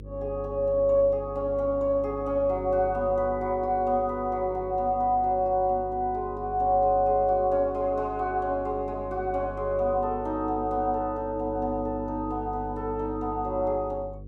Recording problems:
hum; 50 Hz, harmonics up to 500 Hz, SNR 15 dB

